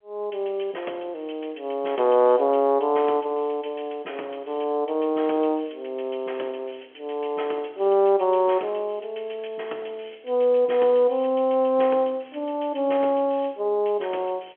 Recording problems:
telephone audio; 280 Hz to 3.4 kHz, G.711

